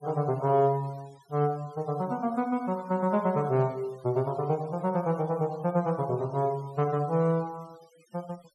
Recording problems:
noise reduction artefacts; signal-to-artefact ratio 27 dB

